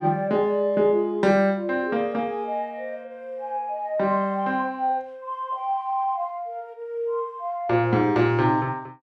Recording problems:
none

